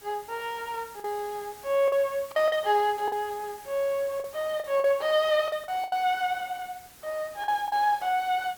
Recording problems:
hiss; slope -1 dB per octave, SNR 20 dB
lost packets; 7% of the sound replaced, filled with the last packet

